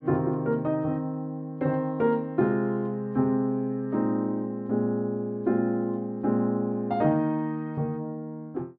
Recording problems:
none

